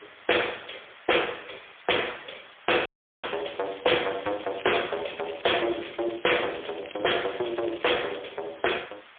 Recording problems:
telephone audio; 300 Hz to 3.4 kHz, AMR-NB, then MP3
distorted audio; soft clipping, signal-to-distortion ratio 14 dB
hiss; SNR 23 dB
dropout; at 3 s
crackle; from 3.5 to 8 s; loose cable, SNR 16 dB

